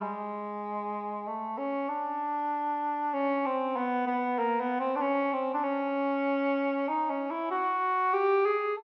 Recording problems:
treble missing; nothing above 6.2 kHz

